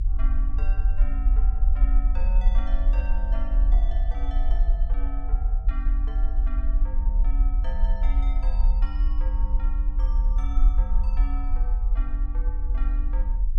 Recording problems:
low-frequency rumble; below 44 Hz, strongest tone 38 Hz, SNR -16 dB

